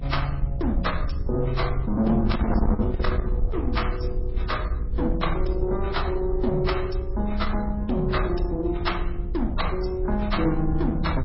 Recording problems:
codec artefacts; AAC, then MP3, log-spectral distance 2 dB, nothing above 5.5 kHz
distorted audio; soft clipping, signal-to-distortion ratio 12 dB
hum; 60 Hz, harmonics up to 480 Hz, SNR 15 dB
wind noise; below 70 Hz, SNR 4 dB

